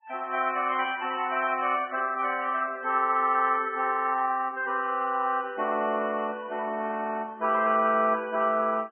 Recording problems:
treble missing; nothing above 3.1 kHz
lossy compression; Vorbis, log-spectral distance 2 dB

